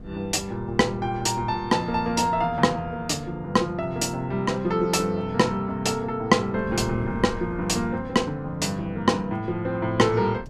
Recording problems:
wind on the microphone; below 260 Hz, SNR 16 dB

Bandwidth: 14 kHz